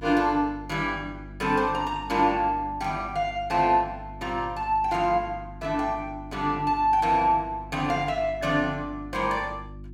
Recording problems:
hum; 50 Hz, harmonics up to 350 Hz, SNR 17 dB

